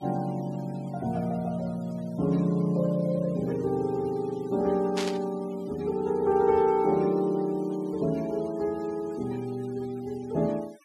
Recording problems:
denoising artefacts; signal-to-artefact ratio 24 dB
static burst; at 5 s; peak -2 dB vs average level

